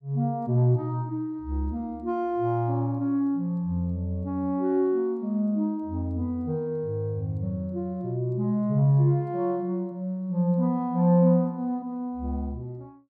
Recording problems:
none

